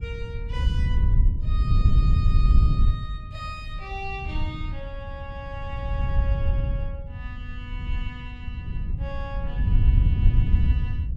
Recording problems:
wind on the microphone; below 88 Hz, SNR -14 dB

